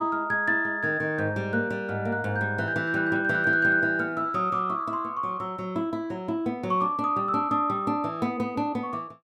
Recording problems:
none

